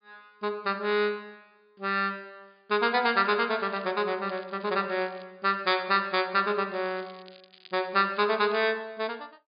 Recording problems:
treble cut off; nothing above 4.8 kHz
crackle; at 3 s, at 4.5 s and from 6.5 to 8.5 s; loose cable, SNR 26 dB

